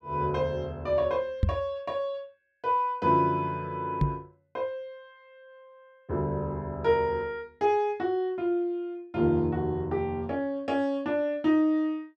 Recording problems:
knock on the microphone; at 1.5 s and at 4 s; peak +7 dB vs average level

